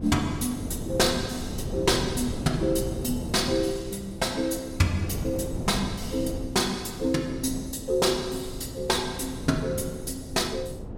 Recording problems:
wind on the microphone; below 290 Hz, SNR 8 dB

